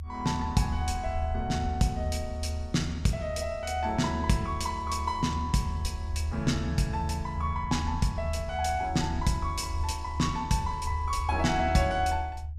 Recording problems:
low-frequency rumble; below 78 Hz, strongest tone 76 Hz, SNR 5 dB

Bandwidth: 15 kHz